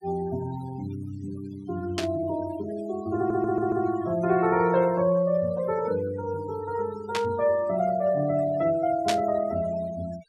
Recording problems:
denoising artefacts; signal-to-artefact ratio 17 dB
static burst; at 2 s, at 7 s and at 9 s; peak +2 dB vs average level
stutter; at 3 s

